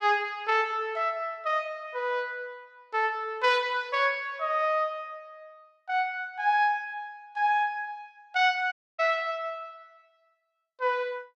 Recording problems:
audio cutting out; at 8.5 s

